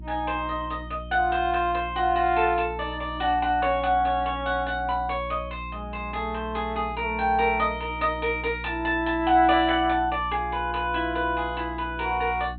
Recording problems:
treble cut off; nothing above 4 kHz
hum; 60 Hz, harmonics up to 360 Hz, SNR 14 dB

